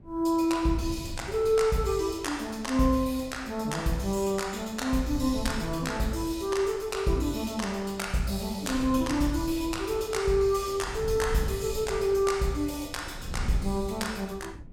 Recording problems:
wind on the microphone; below 120 Hz, SNR 14 dB

